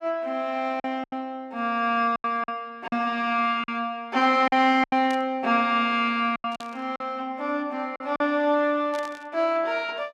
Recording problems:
lost packets; 7% of the sound replaced, filled with silence
burst of static; at 5 s, at 6.5 s and at 9 s; peak -11 dB vs average level

